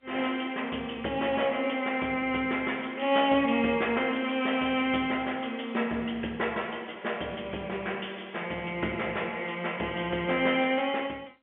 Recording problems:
phone line; 280 Hz to 3.3 kHz, G.711

